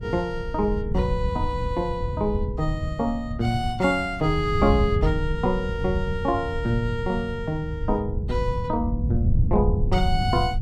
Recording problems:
wind noise; below 110 Hz, SNR 3 dB

